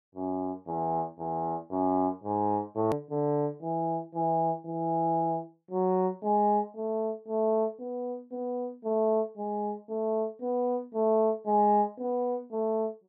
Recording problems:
hard cut with a click; at 3 s

